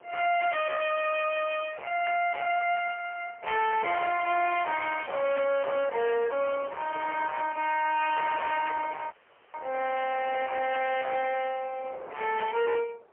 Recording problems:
phone line; 370 Hz to 3.1 kHz, AMR-NB, then MP3
distorted audio; hard clipping, uneven, signal-to-distortion ratio 7 dB
wind noise; below 1.1 kHz, SNR 16 dB
audio cutting out; at 9 s

